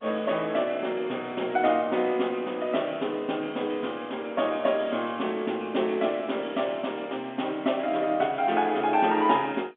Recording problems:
phone line; 170 Hz to 3.5 kHz, G.711

